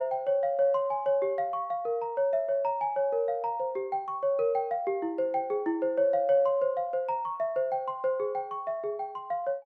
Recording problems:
none

